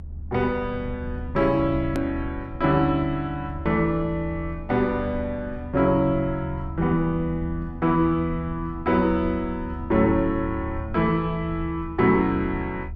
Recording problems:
rumble; below 78 Hz, strongest tone 76 Hz, SNR 12 dB
hard cut with a click; at 2 s

